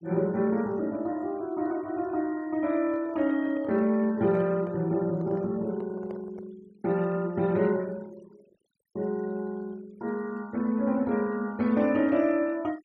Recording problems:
noise reduction artefacts; signal-to-artefact ratio 25 dB
handling noise; from 2.5 to 6.5 s; peak -8 dB vs average level

